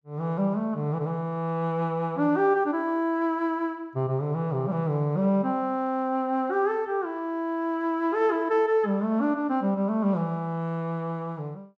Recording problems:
none

